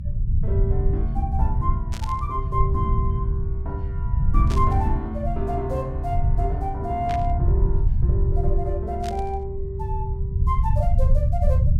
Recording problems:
low-frequency rumble; below 96 Hz, SNR -5 dB
burst of static; 4 times, first at 2 s; peak -4 dB vs average level

